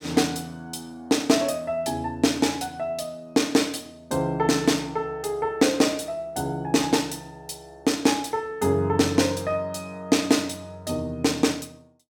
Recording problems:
none

